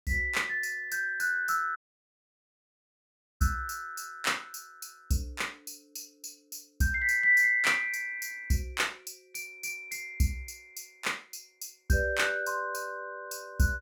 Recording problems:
dropout; at 2 s for 1.5 s

